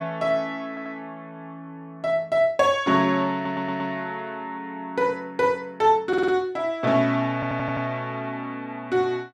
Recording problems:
stutter; 4 times, first at 0.5 s

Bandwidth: 12.5 kHz